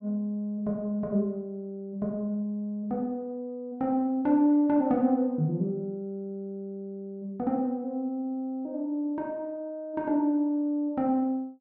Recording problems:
none

